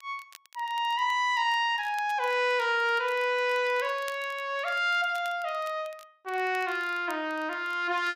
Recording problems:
crackle; vinyl, SNR 25 dB

